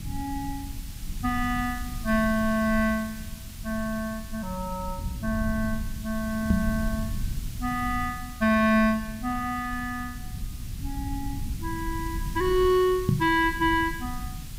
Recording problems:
hiss; slope +2 dB per octave, SNR 17 dB
rumble; below 110 Hz, SNR 10 dB
microphone bump; at 6.5 s and at 13 s; peak +7 dB vs average level

